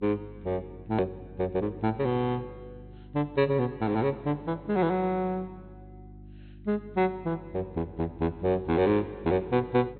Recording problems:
low-pass filter; nothing above 4.1 kHz
electrical hum; 50 Hz, harmonics up to 350 Hz, SNR 20 dB
edit click; at 1 s

